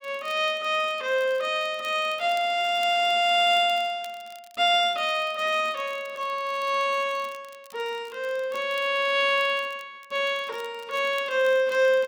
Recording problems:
crackle; vinyl, SNR 27 dB

